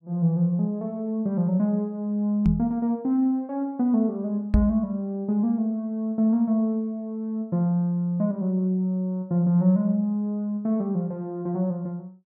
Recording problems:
microphone thump; at 2.5 s and at 4.5 s; peak +7 dB vs average level

